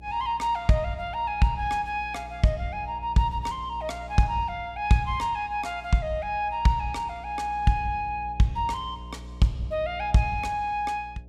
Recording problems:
hum; 60 Hz, harmonics up to 660 Hz, SNR 17 dB

